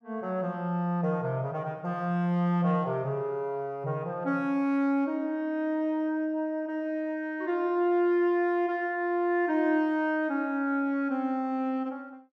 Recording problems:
none

